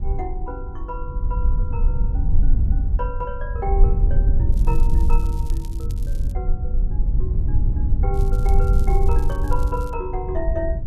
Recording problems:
low-frequency rumble; below 60 Hz, SNR -9 dB
crackling; from 4.5 to 6.5 s and from 8 to 10 s; loose cable, SNR 17 dB

